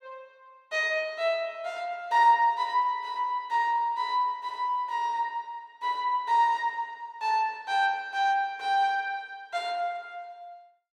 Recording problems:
none

